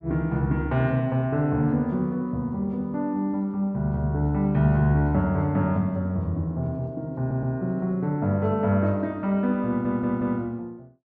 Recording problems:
audio stuttering; at 7 s and at 9.5 s

